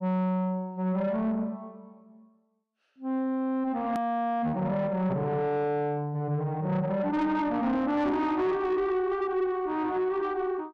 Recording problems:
distortion; soft clipping, signal-to-distortion ratio 11 dB
click at an edit; at 4 s

